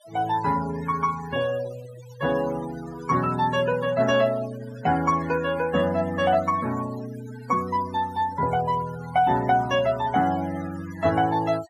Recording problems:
noise reduction artefacts; signal-to-artefact ratio 16 dB

